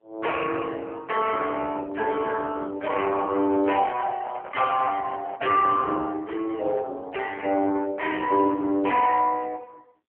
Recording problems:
telephone audio; 260 Hz to 3.1 kHz, AMR-NB
handling noise; from 3 to 5.5 s; peak -7 dB vs average level

